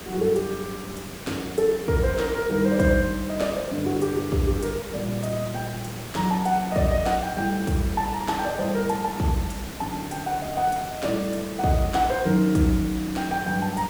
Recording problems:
background hiss; slope -4 dB per octave, SNR 12 dB

